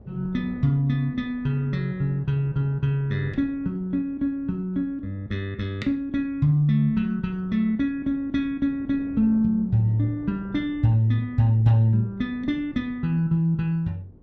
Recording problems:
wind on the microphone; below 310 Hz, SNR 21 dB

